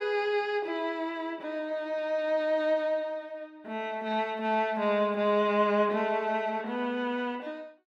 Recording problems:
none

